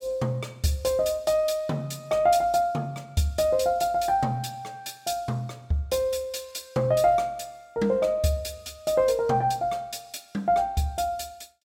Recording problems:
none

